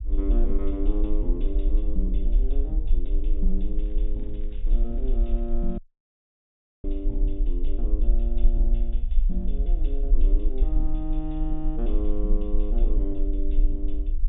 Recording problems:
treble missing; nothing above 4 kHz
low-frequency rumble; below 38 Hz, strongest tone 20 Hz, SNR -7 dB
crackling; from 4 to 6 s; loose cable, SNR 30 dB
dropout; at 6 s for 1 s

